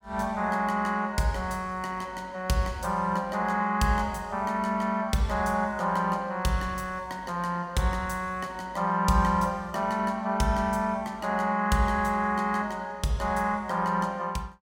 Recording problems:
none

